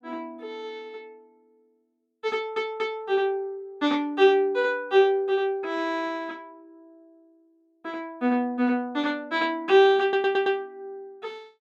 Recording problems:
audio stuttering; at 2.5 s and at 10 s

